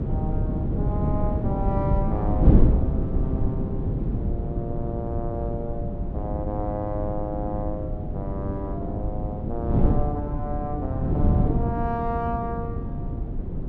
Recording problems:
wind on the microphone; below 200 Hz, SNR -6 dB

